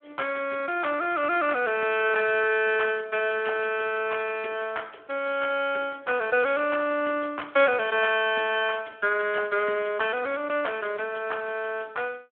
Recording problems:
telephone audio; 240 Hz to 3.3 kHz, Speex

